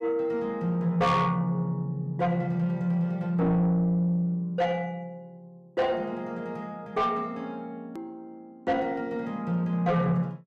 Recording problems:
distortion; soft clipping, signal-to-distortion ratio 11 dB
click at an edit; at 8 s

